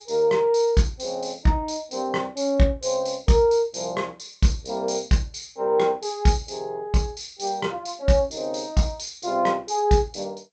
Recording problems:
lossy codec; G.722, log-spectral distance 6 dB

